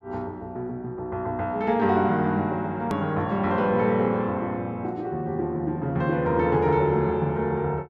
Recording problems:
hard cut with a click; at 3 s

